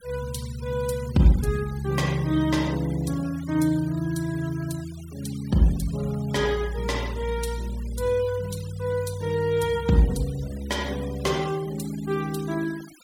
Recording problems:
denoising artefacts; signal-to-artefact ratio 19 dB

